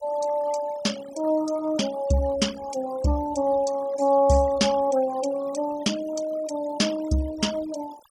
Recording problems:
denoising artefacts; signal-to-artefact ratio 16 dB

